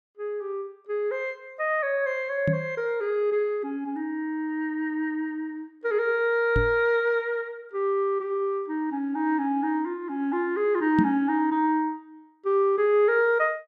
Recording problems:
microphone bump; at 2.5 s, at 6.5 s and at 11 s; peak +6 dB vs average level

